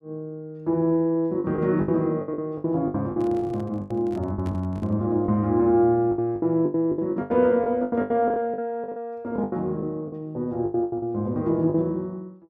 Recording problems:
packet loss; 14% of the sound replaced, filled with the last packet
microphone handling noise; from 3 to 5 s; peak -10 dB vs average level

